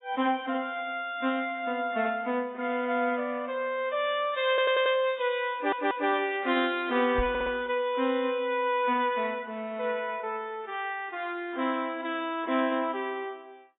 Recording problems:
lossy codec; AAC, log-spectral distance 3 dB, nothing above 3.2 kHz
audio stuttering; at 4.5 s, at 5.5 s and at 7.5 s
microphone thump; at 7 s; peak -2 dB vs average level

